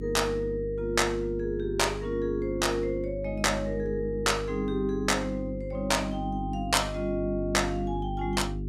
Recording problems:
hum; 50 Hz, harmonics up to 400 Hz, SNR 8 dB

